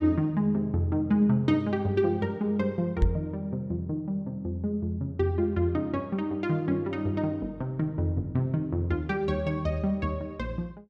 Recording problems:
microphone thump; at 3 s; peak +9 dB vs average level

